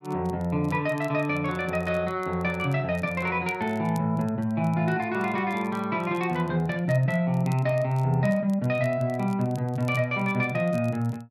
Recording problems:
crackling; vinyl, SNR 27 dB

